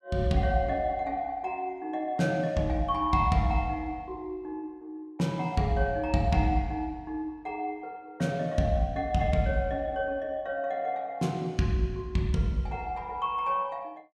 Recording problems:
none

